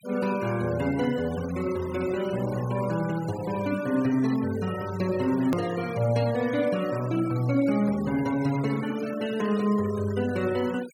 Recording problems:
denoising artefacts; signal-to-artefact ratio 17 dB
hard cut with a click; at 5.5 s

